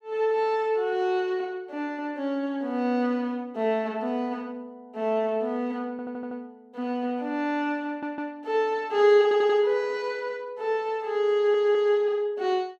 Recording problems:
stutter; 4 times, first at 6 s

